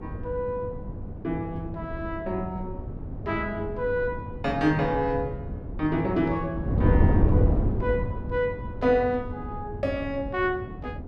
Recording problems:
hum; 50 Hz, harmonics up to 550 Hz, SNR 18 dB
wind on the microphone; below 200 Hz, SNR 2 dB

